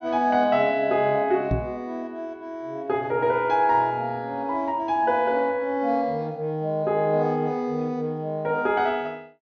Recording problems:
treble cut off; nothing above 6.4 kHz
knock on the microphone; at 1.5 s; peak +2 dB vs average level

